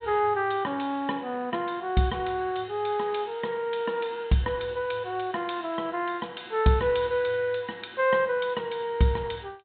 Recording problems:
treble missing; nothing above 4 kHz

